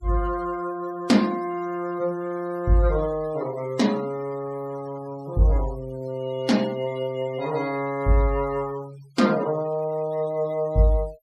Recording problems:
noise reduction artefacts; signal-to-artefact ratio 22 dB

